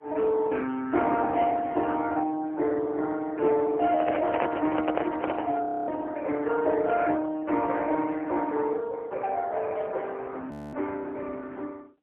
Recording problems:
phone line; 260 Hz to 3.6 kHz, AMR-NB, then MP3
microphone handling noise; from 4 to 5.5 s; peak +3 dB vs average level
frozen audio; at 5.5 s and at 11 s

